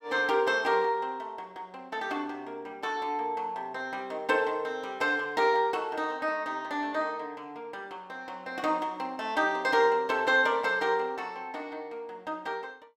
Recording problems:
none

